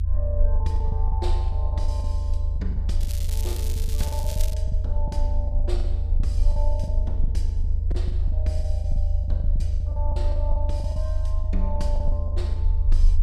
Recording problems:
low-frequency rumble; below 78 Hz, strongest tone 28 Hz, SNR -11 dB
packet loss; 15% of the sound replaced, filled with the last packet
crackling; from 3 to 4.5 s; loose cable, SNR 2 dB

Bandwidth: 14.5 kHz